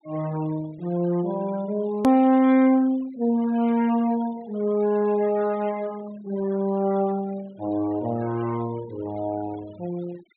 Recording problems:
treble cut off; nothing above 4 kHz
denoising artefacts; signal-to-artefact ratio 22 dB
edit click; at 2 s

